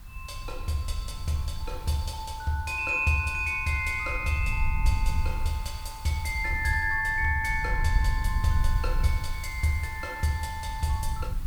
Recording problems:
background hiss; SNR 22 dB
wind noise; below 70 Hz, SNR 5 dB

